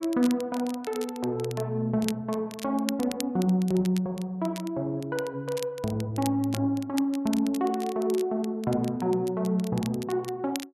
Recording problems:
crackling; vinyl, SNR 15 dB

